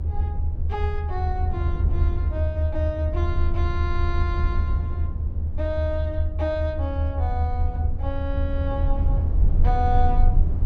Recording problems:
rumble; below 80 Hz, SNR -6 dB

